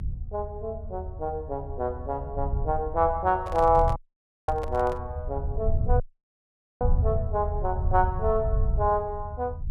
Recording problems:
low-frequency rumble; below 86 Hz, SNR 4 dB
handling noise; from 3.5 to 5 s; peak -4 dB vs average level
audio cutting out; at 4 s for 0.5 s and at 6 s for 1 s

